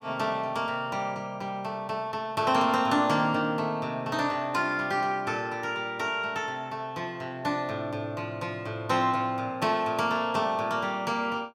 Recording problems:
none

